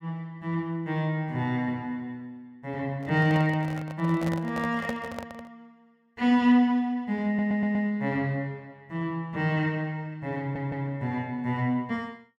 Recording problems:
microphone handling noise; from 3 to 5.5 s; peak -2 dB vs average level
audio stuttering; at 7.5 s and at 10 s

